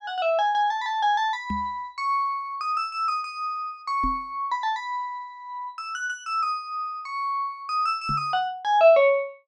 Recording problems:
microphone thump; at 1.5 s, at 4 s and at 8 s; peak -2 dB vs average level

